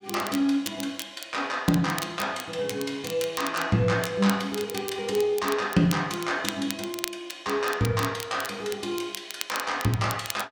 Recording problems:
crackle; vinyl, SNR 11 dB

